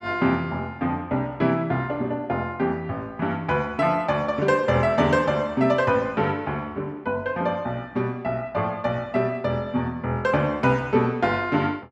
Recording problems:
none

